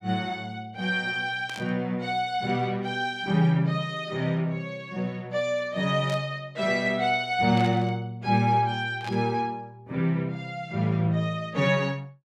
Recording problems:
static burst; 4 times, first at 1.5 s; peak -9 dB vs average level

